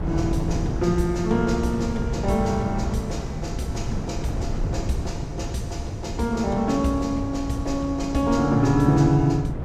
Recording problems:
wind on the microphone; below 210 Hz, SNR 6 dB

